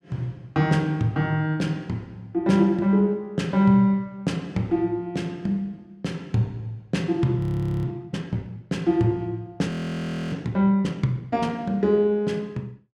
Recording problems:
frozen audio; at 7.5 s and at 9.5 s for 0.5 s

